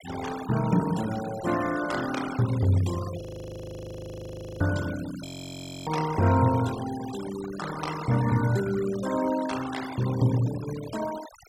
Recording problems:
noise reduction artefacts; signal-to-artefact ratio 13 dB
frozen audio; at 3 s for 1.5 s and at 5.5 s for 0.5 s

